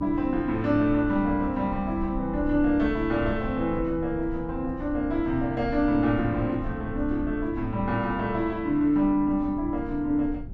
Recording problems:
rumble; below 100 Hz, SNR 13 dB

